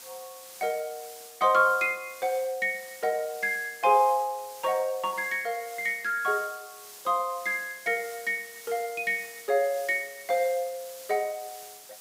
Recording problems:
background hiss; slope +1 dB per octave, SNR 17 dB

